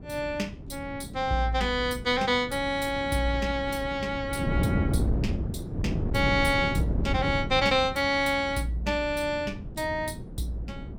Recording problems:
wind noise; below 240 Hz, SNR 6 dB

